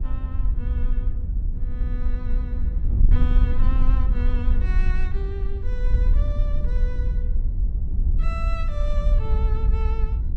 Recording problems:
wind on the microphone; below 58 Hz, SNR -13 dB

